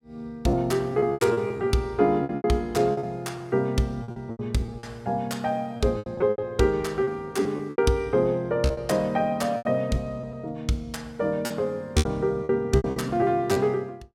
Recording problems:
packet loss; 12% of the sound replaced, filled with repeated pitch periods

